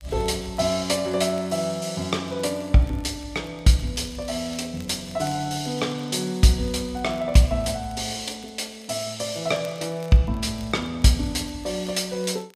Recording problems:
crackling; vinyl, SNR 27 dB

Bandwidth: 15 kHz